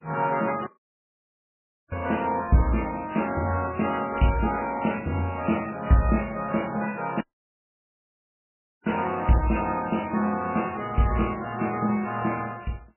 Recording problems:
lossy compression; MP2, then MP3, log-spectral distance 7 dB, nothing above 2.9 kHz
dropout; at 0.5 s for 1.5 s and at 7 s for 1.5 s

